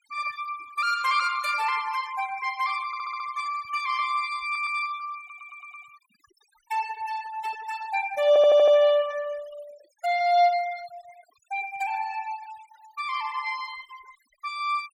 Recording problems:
denoising artefacts; signal-to-artefact ratio 20 dB
stutter; 4 times, first at 3 s

